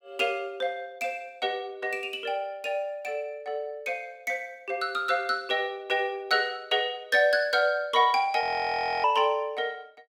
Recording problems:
audio freezing; at 8.5 s for 0.5 s

